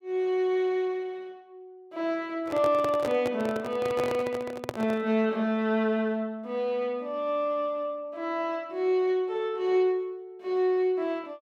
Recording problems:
handling noise; from 2.5 to 5 s; peak 0 dB vs average level

